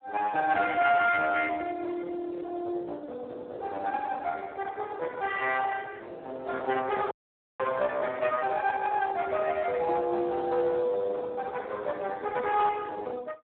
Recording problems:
telephone audio; 320 Hz to 2.1 kHz, Speex
distorted audio; hard clipping, uneven, signal-to-distortion ratio 9 dB
dropout; at 7 s

